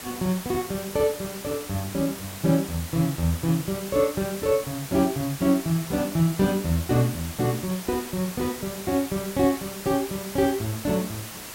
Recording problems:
background hiss; slope -2 dB per octave, SNR 11 dB

